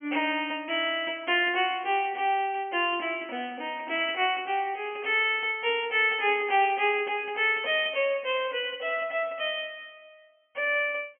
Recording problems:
treble missing; nothing above 3.2 kHz

